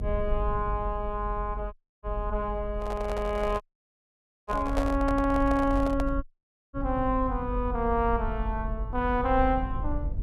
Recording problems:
low-frequency rumble; below 60 Hz, strongest tone 46 Hz, SNR 6 dB
audio cutting out; at 1.5 s, at 3.5 s for 1 s and at 6 s for 0.5 s
microphone handling noise; from 3 to 6 s; peak +1 dB vs average level

